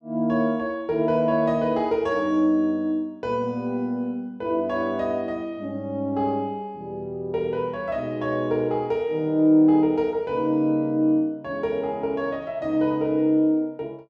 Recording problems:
none

